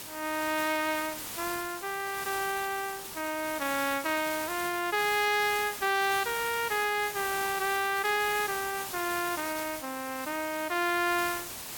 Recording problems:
hiss; slope -1 dB per octave, SNR 8 dB

